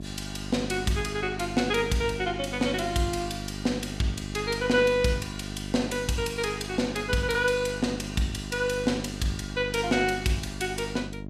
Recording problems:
electrical hum; 50 Hz, harmonics up to 750 Hz, SNR 9 dB

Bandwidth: 15 kHz